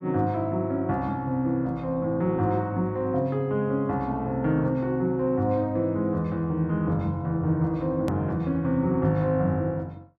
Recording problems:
hard cut with a click; at 8 s

